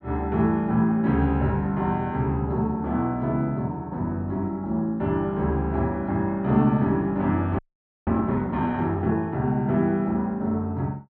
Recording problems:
audio freezing; at 7.5 s

